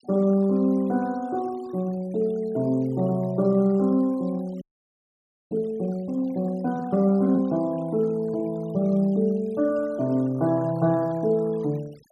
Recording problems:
denoising artefacts; signal-to-artefact ratio 28 dB
frozen audio; at 4.5 s for 1 s

